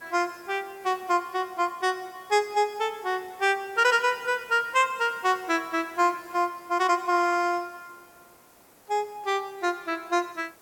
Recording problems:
background hiss; slope -5 dB per octave, SNR 26 dB

